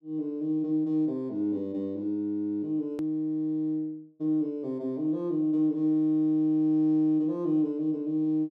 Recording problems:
click at an edit; at 3 s

